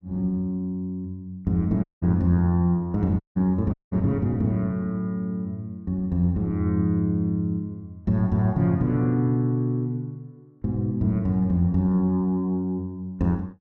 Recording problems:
audio cutting out; at 2 s, at 3 s and at 3.5 s

